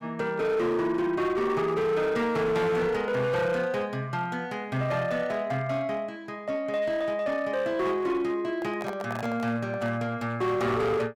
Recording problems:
distortion; hard clipping, uneven, signal-to-distortion ratio 11 dB
microphone handling noise; from 8.5 to 10 s; peak -3 dB vs average level

